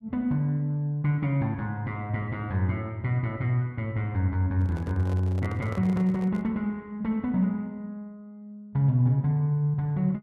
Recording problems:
handling noise; from 4.5 to 6.5 s; peak -9 dB vs average level

